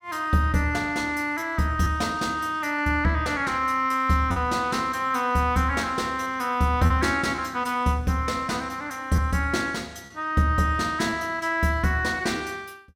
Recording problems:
lost packets; 3% of the sound replaced, filled with repeated pitch periods

